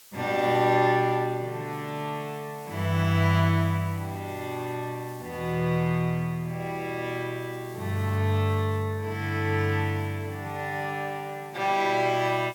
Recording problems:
hiss; slope +2 dB per octave, SNR 24 dB

